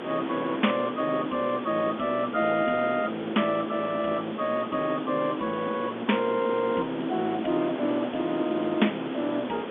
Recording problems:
phone line; 170 Hz to 3.5 kHz, G.711
hiss; SNR 8 dB
wind on the microphone; below 1.3 kHz, SNR 19 dB

